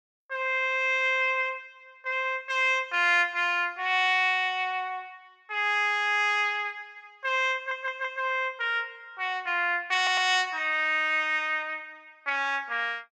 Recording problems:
audio stuttering; at 7.5 s and at 10 s

